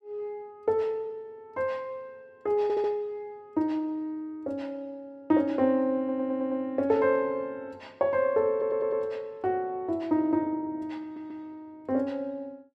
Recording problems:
audio stuttering; 4 times, first at 2.5 s

